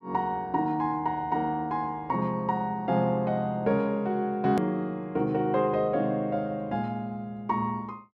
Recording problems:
hard cut with a click; at 4.5 s

